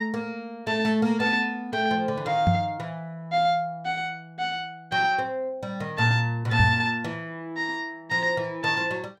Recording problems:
microphone thump; at 2.5 s and at 6.5 s; peak +6 dB vs average level

